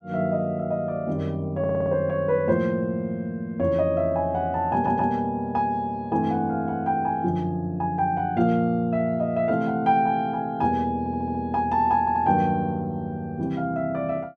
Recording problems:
audio stuttering; 4 times, first at 1.5 s

